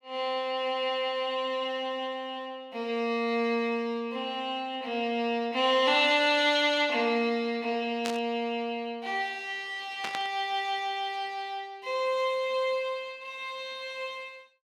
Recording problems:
static burst; at 8 s and at 10 s; peak -2 dB vs average level

